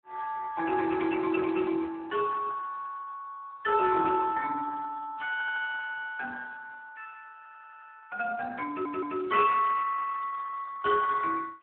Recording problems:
telephone audio; 300 Hz to 3.1 kHz, Speex
stutter; at 5.5 s, at 7.5 s and at 8.5 s

